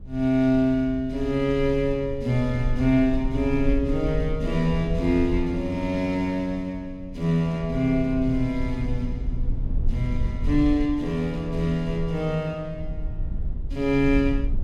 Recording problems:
low-frequency rumble; below 64 Hz, SNR 8 dB

